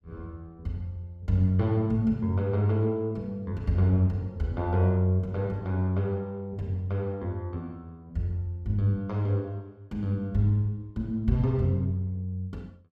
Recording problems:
none

